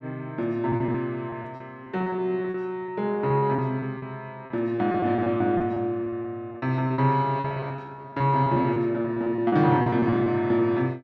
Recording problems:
lost packets; 13% of the sound replaced, filled with repeated pitch periods

